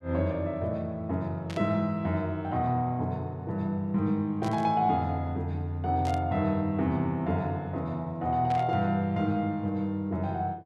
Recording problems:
burst of static; 4 times, first at 1.5 s; peak -9 dB vs average level

